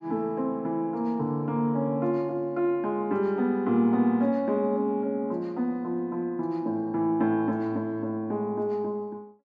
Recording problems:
none

